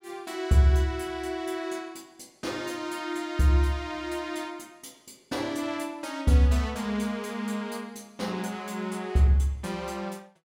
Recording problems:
none

